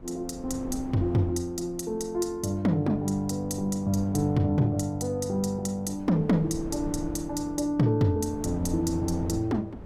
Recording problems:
wind on the microphone; below 290 Hz, SNR 15 dB

